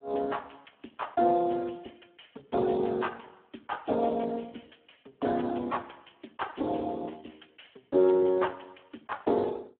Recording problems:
telephone audio; 190 Hz to 3.6 kHz, Speex

